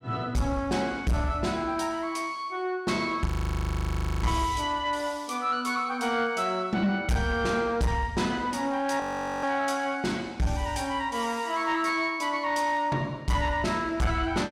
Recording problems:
distortion; soft clipping, signal-to-distortion ratio 11 dB
frozen audio; at 3.5 s for 1 s and at 9 s

